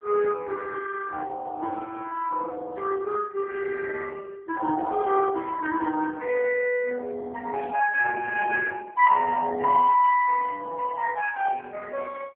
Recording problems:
telephone audio; 260 Hz to 2.5 kHz, AMR-NB

